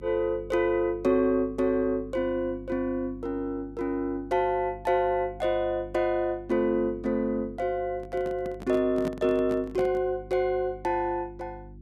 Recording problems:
electrical hum; 50 Hz, harmonics up to 350 Hz, SNR 19 dB
microphone handling noise; from 8 to 10 s; peak -4 dB vs average level

